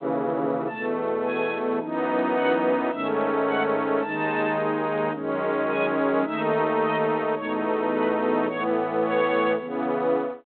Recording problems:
telephone audio; 220 Hz to 3.5 kHz, G.726

